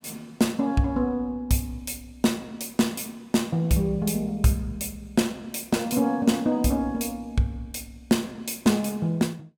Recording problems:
none

